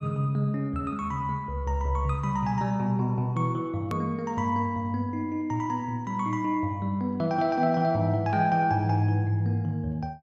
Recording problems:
hard cut with a click; at 4 s

